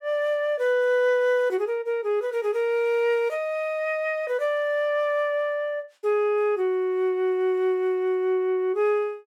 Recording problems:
none

